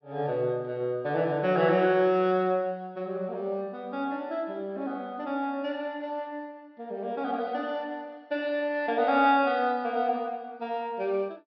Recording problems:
low-pass filter; nothing above 5.5 kHz

